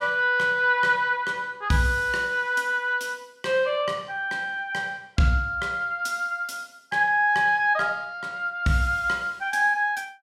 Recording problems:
none

